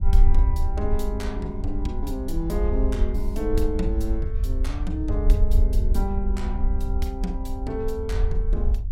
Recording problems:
rumble; below 56 Hz, SNR -4 dB

